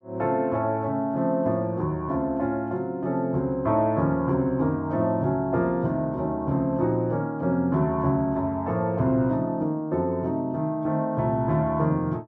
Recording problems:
none

